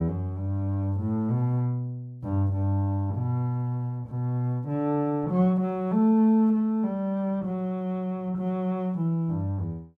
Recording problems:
none

